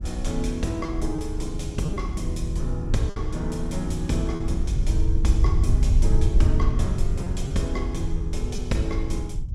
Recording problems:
rumble; below 78 Hz, SNR -3 dB
lost packets; 3% of the sound replaced, filled with repeated pitch periods

